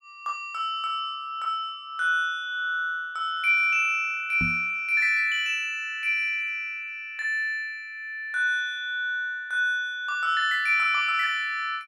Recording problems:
microphone thump; at 4.5 s; peak -2 dB vs average level

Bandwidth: 15.5 kHz